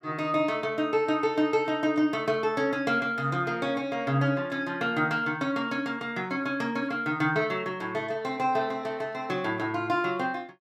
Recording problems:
none

